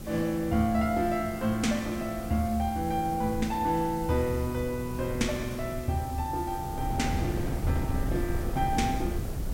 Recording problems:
background hiss; slope +2 dB per octave, SNR 18 dB
wind noise; below 210 Hz, SNR 7 dB

